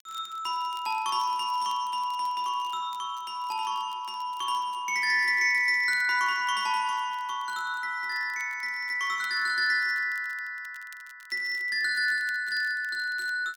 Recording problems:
crackling; vinyl, SNR 28 dB

